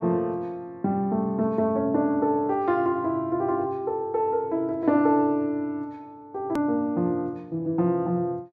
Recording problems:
click at an edit; at 6.5 s

